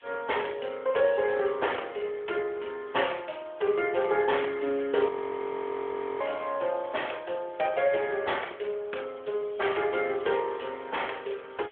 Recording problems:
phone line; 320 Hz to 3.4 kHz, AMR-NB
hiss; SNR 27 dB
frozen audio; at 5 s for 1 s

